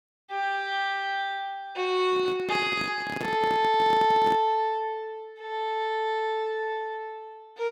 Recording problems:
handling noise; from 2 to 4.5 s; peak -4 dB vs average level

